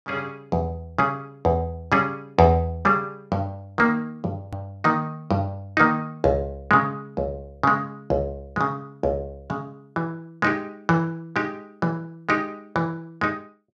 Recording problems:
edit click; at 4.5 s

